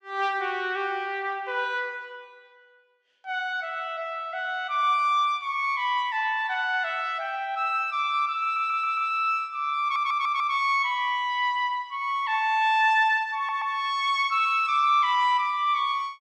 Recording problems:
stutter; at 8.5 s, at 10 s and at 13 s

